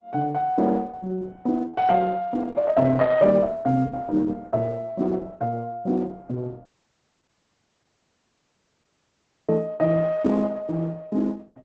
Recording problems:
codec artefacts; Opus, log-spectral distance 3 dB, nothing above 7.6 kHz
dropout; at 6.5 s for 3 s

